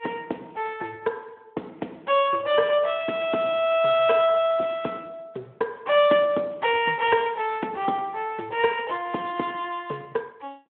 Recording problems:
telephone audio; 260 Hz to 3.5 kHz, Speex

